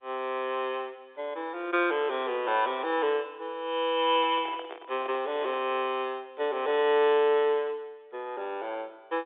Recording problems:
telephone audio; 300 Hz to 3.7 kHz, G.711
microphone handling noise; from 4 to 5.5 s; peak -9 dB vs average level

